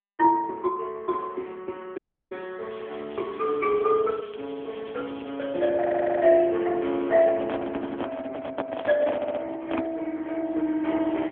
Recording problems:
telephone audio; 240 Hz to 3.6 kHz, AMR-NB
dropout; at 2 s
crackle; from 2.5 to 5.5 s and at 8.5 s; loose cable, SNR 23 dB
audio stuttering; at 6 s and at 9 s
handling noise; from 7 to 10 s; peak -1 dB vs average level

